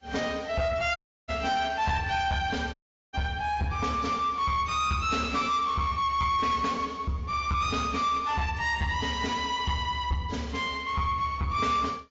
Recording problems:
lossy compression; AAC, log-spectral distance 3 dB
distortion; soft clipping, signal-to-distortion ratio 10 dB
dropout; at 1 s and at 2.5 s

